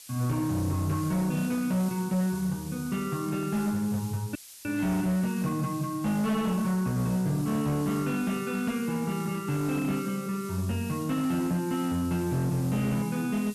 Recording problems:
distorted audio; hard clipping, signal-to-distortion ratio 12 dB
hiss; slope +4 dB per octave, SNR 16 dB
audio cutting out; at 4.5 s

